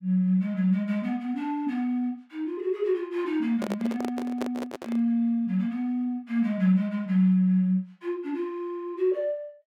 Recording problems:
handling noise; from 3.5 to 5 s; peak -1 dB vs average level

